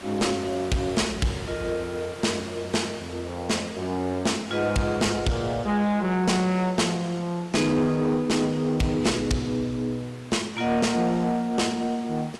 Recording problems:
lossy codec; AAC, log-spectral distance 3 dB
distorted audio; soft clipping, signal-to-distortion ratio 10 dB
background hiss; slope -3 dB per octave, SNR 18 dB

